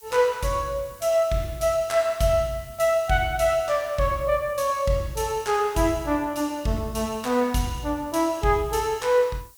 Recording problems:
hiss; slope +2 dB per octave, SNR 24 dB

